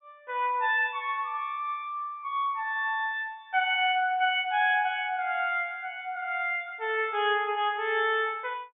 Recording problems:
treble cut off; nothing above 3.6 kHz

